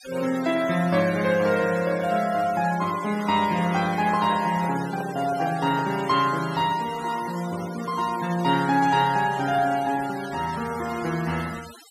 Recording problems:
noise reduction artefacts; signal-to-artefact ratio 15 dB
handling noise; from 3.5 to 6 s; peak -10 dB vs average level

